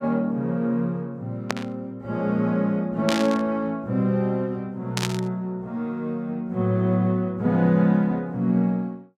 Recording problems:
static burst; at 1.5 s, at 3 s and at 5 s; peak +2 dB vs average level

